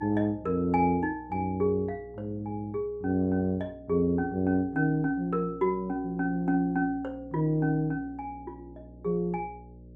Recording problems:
hum; 60 Hz, harmonics up to 600 Hz, SNR 22 dB

